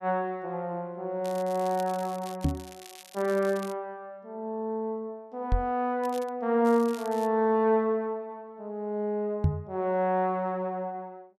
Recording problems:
crackling; from 1 to 3.5 s, at 6 s and at 6.5 s; loose cable, SNR 19 dB
knock on the microphone; at 2.5 s, at 5.5 s and at 9.5 s; peak +8 dB vs average level

